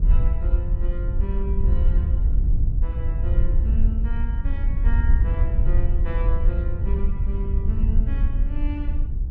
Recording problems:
rumble; below 60 Hz, SNR -2 dB
wind on the microphone; below 64 Hz, SNR -12 dB

